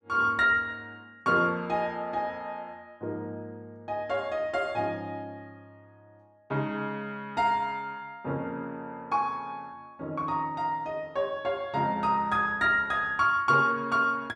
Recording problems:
none

